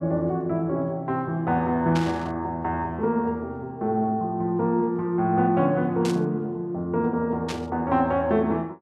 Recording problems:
static burst; at 2 s, at 6 s and at 7.5 s; peak -4 dB vs average level

